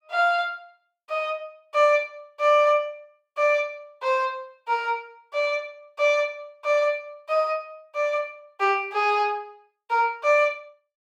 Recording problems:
none

